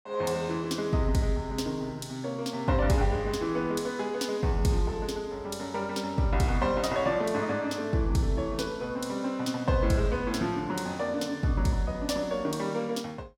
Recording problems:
none

